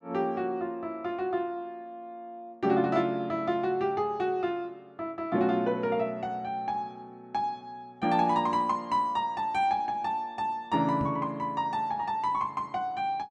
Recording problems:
microphone bump; at 11 s; peak -1 dB vs average level

